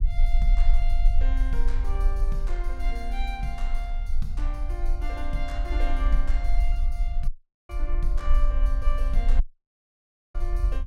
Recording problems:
low-frequency rumble; below 40 Hz, strongest tone 18 Hz, SNR -9 dB
dropout; at 7.5 s and at 9.5 s for 1 s

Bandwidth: 16.5 kHz